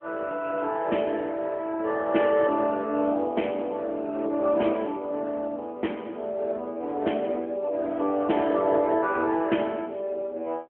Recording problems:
telephone audio; 240 Hz to 3.3 kHz, AMR-NB

